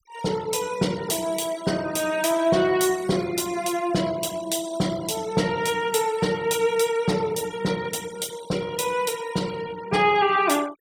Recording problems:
denoising artefacts; signal-to-artefact ratio 17 dB

